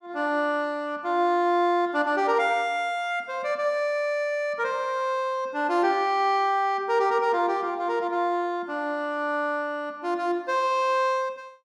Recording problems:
none

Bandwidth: 14.5 kHz